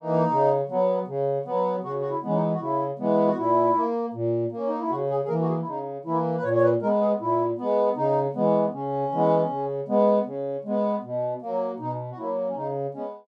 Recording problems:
none

